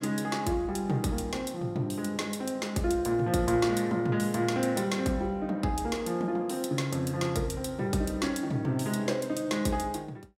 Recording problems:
none

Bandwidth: 16 kHz